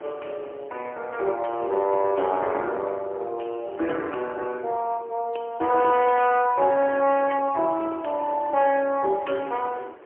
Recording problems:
telephone audio; 300 Hz to 3.1 kHz, AMR-NB, then MP3
wind on the microphone; below 830 Hz, SNR 20 dB

